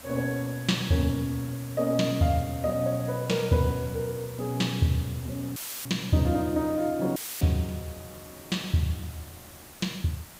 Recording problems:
background hiss; slope -3 dB per octave, SNR 17 dB
dropout; at 5.5 s and at 7 s; filled with static

